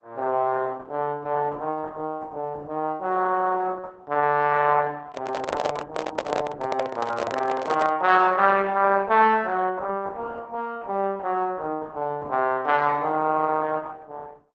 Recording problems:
lossy compression; Opus, log-spectral distance 3 dB
handling noise; from 5 to 8 s; peak +4 dB vs average level

